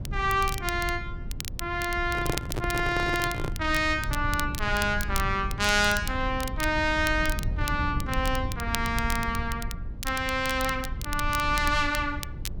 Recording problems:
rumble; below 100 Hz, SNR 8 dB
crackle; vinyl, SNR 12 dB
microphone handling noise; from 2 to 3.5 s; peak +3 dB vs average level

